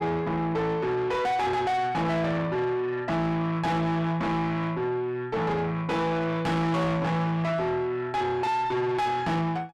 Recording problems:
distortion; soft clipping, signal-to-distortion ratio 5 dB

